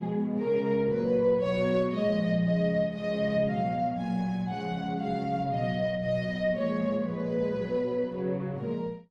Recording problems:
codec artefacts; Opus, log-spectral distance 2 dB, nothing above 11.6 kHz

